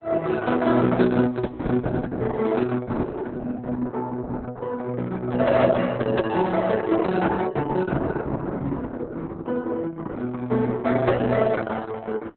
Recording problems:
lossy compression; Opus, log-spectral distance 3 dB, nothing above 4 kHz

